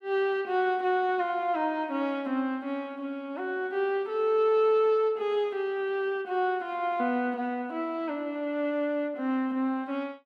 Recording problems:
none

